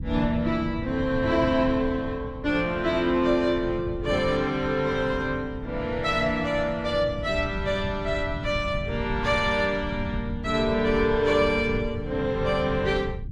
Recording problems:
low-frequency rumble; below 140 Hz, SNR 10 dB

